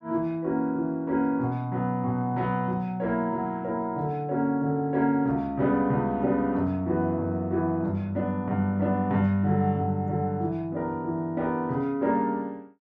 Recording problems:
none

